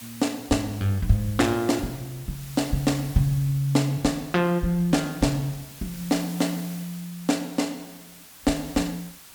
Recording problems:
background hiss; slope +1 dB per octave, SNR 17 dB

